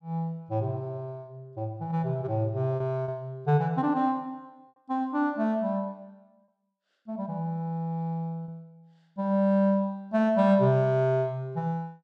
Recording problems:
packet loss; 1.2% of the sound replaced, filled with repeated pitch periods

